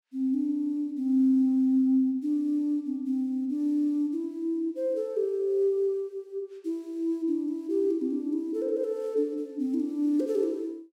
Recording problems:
none

